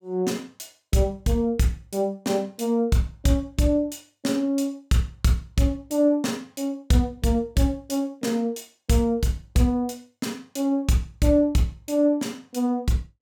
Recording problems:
none

